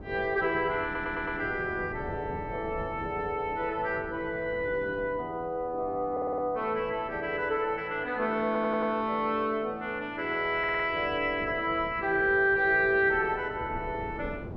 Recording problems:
wind on the microphone; below 360 Hz, SNR 17 dB
audio stuttering; 4 times, first at 1 s

